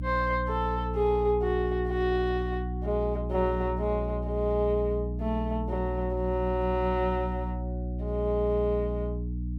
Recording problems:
hum; 60 Hz, harmonics up to 300 Hz, SNR 4 dB

